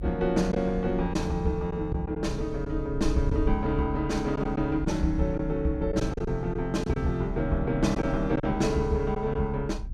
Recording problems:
low-frequency rumble; below 64 Hz, strongest tone 36 Hz, SNR 9 dB
packet loss; 4% of the sound replaced, filled with silence

